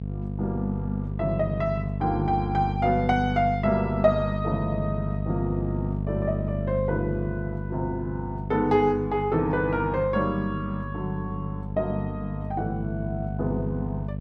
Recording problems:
electrical hum; 50 Hz, harmonics up to 500 Hz, SNR 4 dB

